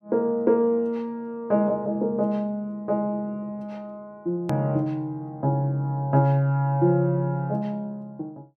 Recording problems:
hard cut with a click; at 4.5 s

